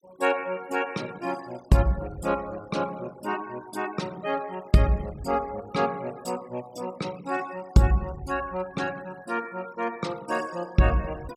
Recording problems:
denoising artefacts; signal-to-artefact ratio 20 dB

